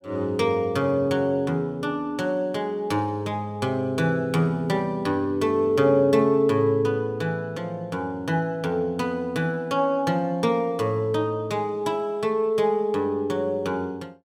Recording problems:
none

